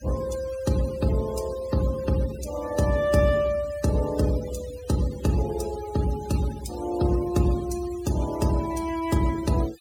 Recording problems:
denoising artefacts; signal-to-artefact ratio 16 dB

